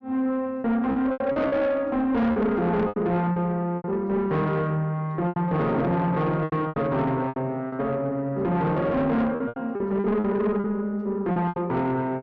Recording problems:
distortion; soft clipping, signal-to-distortion ratio 10 dB
lost packets; 10% of the sound replaced, filled with repeated pitch periods

